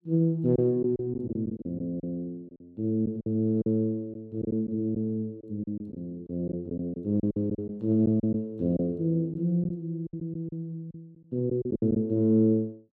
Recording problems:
packet loss; 9% of the sound replaced, filled with silence

